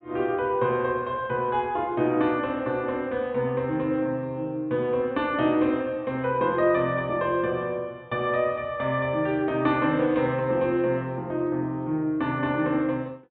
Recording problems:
treble missing; nothing above 4 kHz

